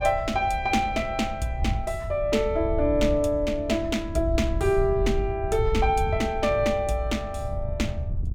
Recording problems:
wind noise; below 92 Hz, SNR 7 dB

